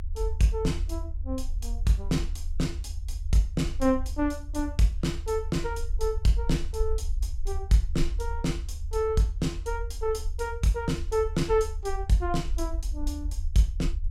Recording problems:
low-frequency rumble; below 70 Hz, SNR 6 dB

